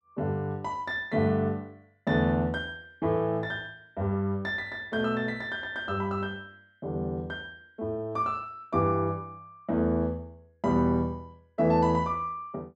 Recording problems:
none

